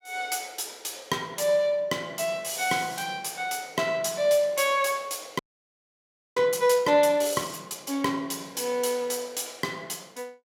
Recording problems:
audio freezing; at 5.5 s for 1 s

